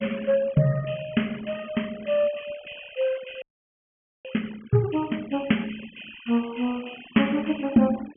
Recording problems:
low-pass filter; nothing above 3.2 kHz
denoising artefacts; signal-to-artefact ratio 20 dB
frozen audio; at 3.5 s for 1 s

